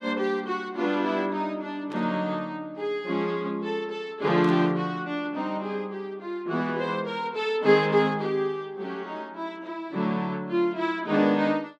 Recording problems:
static burst; at 2 s and at 4.5 s; peak -14 dB vs average level

